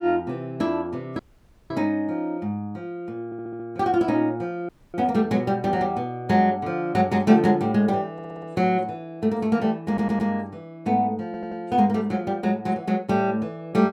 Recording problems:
dropout; at 1 s for 0.5 s and at 4.5 s
audio stuttering; 4 times, first at 3.5 s

